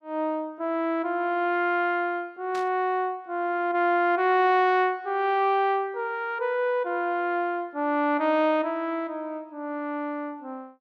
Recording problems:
burst of static; at 2.5 s; peak -12 dB vs average level

